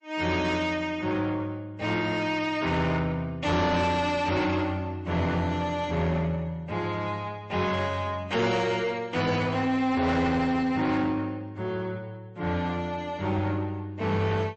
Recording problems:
lossy codec; MP3, log-spectral distance 2 dB, nothing above 7.3 kHz
distortion; soft clipping, signal-to-distortion ratio 11 dB

